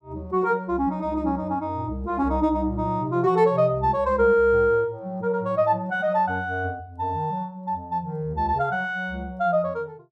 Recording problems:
none

